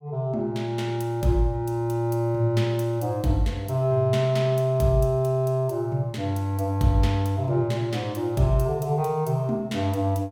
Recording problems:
none

